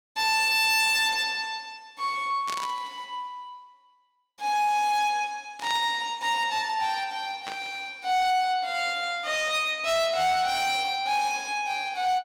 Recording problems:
distorted audio; hard clipping, signal-to-distortion ratio 12 dB
static burst; at 2.5 s, at 5.5 s and at 7.5 s; peak -5 dB vs average level

